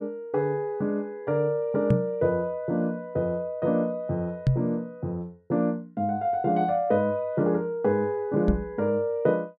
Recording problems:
knock on the microphone; at 2 s, at 4.5 s and at 8.5 s; peak +8 dB vs average level

